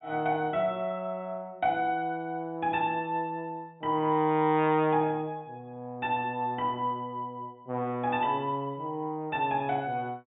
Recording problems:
treble cut off; nothing above 4 kHz

